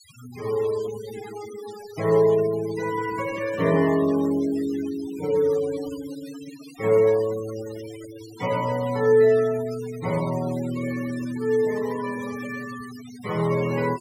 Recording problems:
denoising artefacts; signal-to-artefact ratio 18 dB

